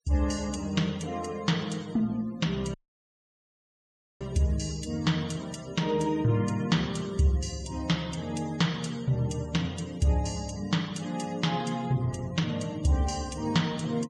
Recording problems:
noise reduction artefacts; signal-to-artefact ratio 20 dB
audio cutting out; at 2.5 s for 1.5 s

